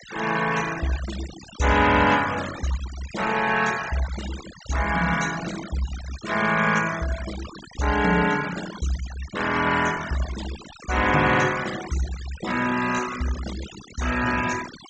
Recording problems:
treble missing; nothing above 8 kHz
denoising artefacts; signal-to-artefact ratio 11 dB

